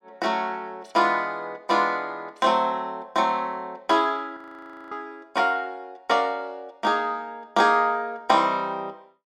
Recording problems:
audio freezing; at 4.5 s for 0.5 s

